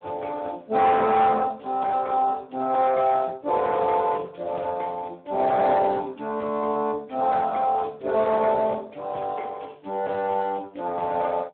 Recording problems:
telephone audio; 260 Hz to 3 kHz, Speex
distortion; hard clipping, signal-to-distortion ratio 11 dB

